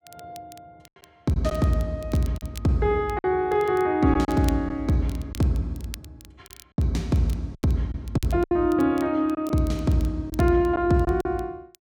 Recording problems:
crackling; vinyl, SNR 24 dB
packet loss; 5% of the sound replaced, filled with silence

